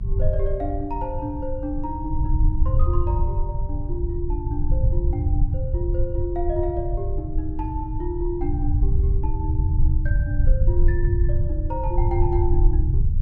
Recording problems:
mains hum; 60 Hz, harmonics up to 960 Hz, SNR 19 dB
low-frequency rumble; below 80 Hz, SNR -6 dB

